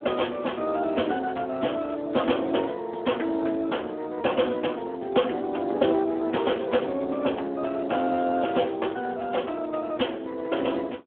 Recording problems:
telephone audio; 240 Hz to 3.4 kHz, Speex

